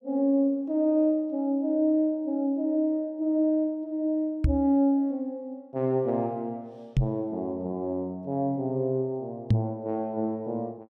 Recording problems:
knock on the microphone; at 4.5 s, at 7 s and at 9.5 s; peak +8 dB vs average level

